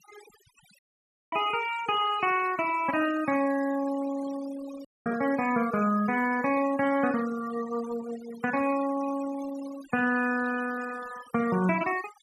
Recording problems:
noise reduction artefacts; signal-to-artefact ratio 16 dB
audio cutting out; at 1 s for 0.5 s and at 5 s

